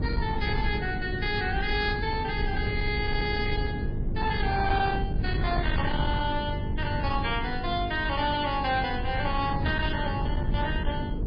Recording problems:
lossy compression; MP3, log-spectral distance 3 dB, nothing above 4.1 kHz
distortion; soft clipping, signal-to-distortion ratio 12 dB
mains hum; 50 Hz, harmonics up to 450 Hz, SNR 9 dB
low-frequency rumble; below 150 Hz, SNR 3 dB

